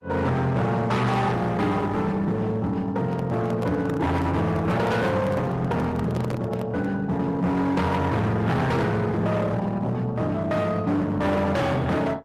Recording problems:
lossy codec; Opus, log-spectral distance 2 dB, nothing above 13.7 kHz
distortion; hard clipping, signal-to-distortion ratio 7 dB
microphone handling noise; from 3 to 7 s; peak -3 dB vs average level

